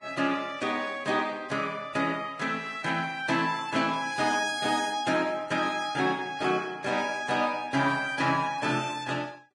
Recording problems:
lossy codec; Vorbis, log-spectral distance 3 dB, nothing above 10.1 kHz

